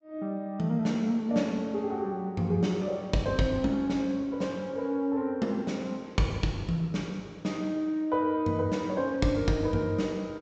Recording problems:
low-pass filter; nothing above 8 kHz

